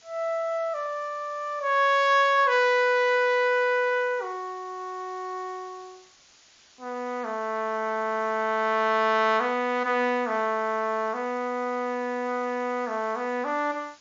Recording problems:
lossy codec; MP3, log-spectral distance 5 dB, nothing above 6 kHz
hiss; slope +1 dB per octave, SNR 29 dB

